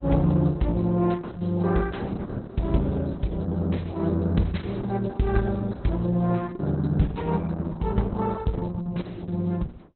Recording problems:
codec artefacts; Opus, log-spectral distance 3 dB, nothing above 4.1 kHz

